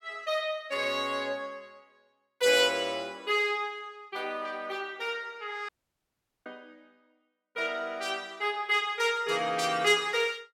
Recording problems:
audio cutting out; at 5.5 s for 1 s

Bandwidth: 17 kHz